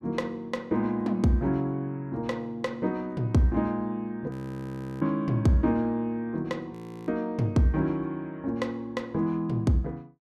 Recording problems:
audio freezing; at 4.5 s for 0.5 s and at 6.5 s

